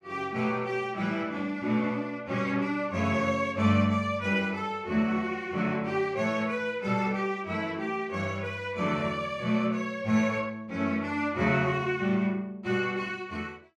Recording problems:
none

